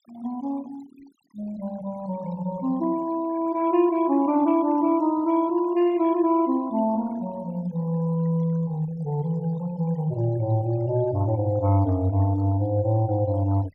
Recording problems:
noise reduction artefacts; signal-to-artefact ratio 24 dB

